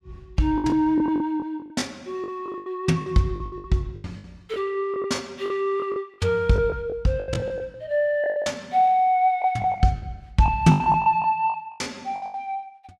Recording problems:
packet loss; 16% of the sound replaced, filled with the last packet

